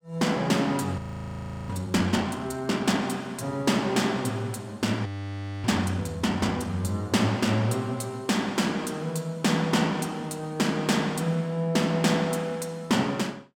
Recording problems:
frozen audio; at 1 s for 0.5 s and at 5 s for 0.5 s

